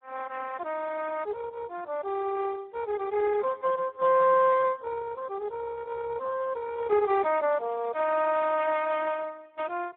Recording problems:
telephone audio; 340 Hz to 2.3 kHz, Speex

